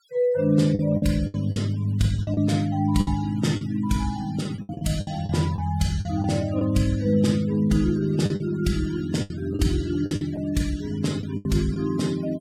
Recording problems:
denoising artefacts; signal-to-artefact ratio 21 dB
lost packets; 9% of the sound replaced, filled with the last packet

